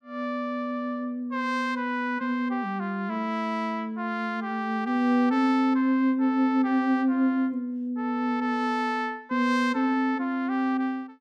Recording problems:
none

